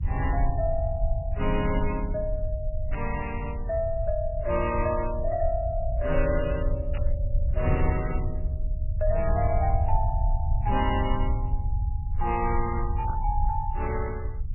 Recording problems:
codec artefacts; MP2, then MP3, log-spectral distance 2 dB, nothing above 2.9 kHz
rumble; below 76 Hz, SNR 0 dB
static burst; at 3 s, at 7 s and at 13 s; peak -5 dB vs average level

